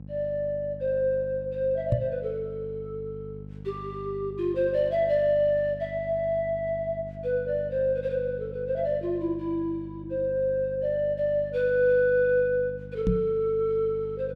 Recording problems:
hum; 50 Hz, harmonics up to 550 Hz, SNR 15 dB
microphone bump; at 2 s and at 13 s; peak +5 dB vs average level

